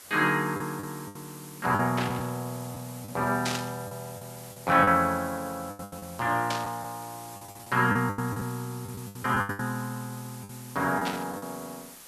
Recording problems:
background hiss; slope -1 dB per octave, SNR 16 dB
packet loss; 11% of the sound replaced, filled with the last packet
static burst; 4 times, first at 2 s; peak +1 dB vs average level

